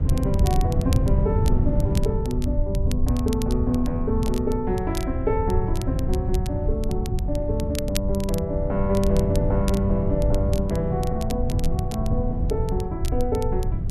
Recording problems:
rumble; below 98 Hz, SNR 1 dB
wind noise; below 150 Hz, SNR 3 dB
crackle; vinyl, SNR 14 dB

